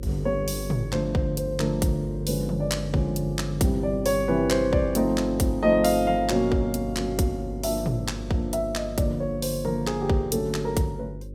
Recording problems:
electrical hum; 50 Hz, harmonics up to 550 Hz, SNR 11 dB

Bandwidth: 16.5 kHz